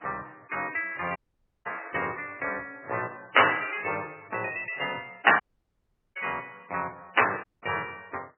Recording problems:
lossy compression; MP3, log-spectral distance 6 dB, nothing above 2.9 kHz
dropout; at 1 s, at 5.5 s for 1 s and at 7.5 s

